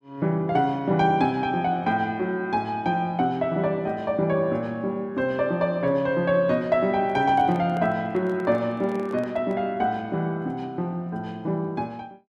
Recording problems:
microphone handling noise; from 7 to 9.5 s; peak -11 dB vs average level

